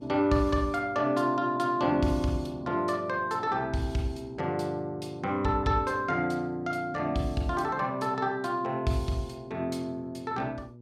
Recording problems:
hum; 60 Hz, harmonics up to 600 Hz, SNR 21 dB

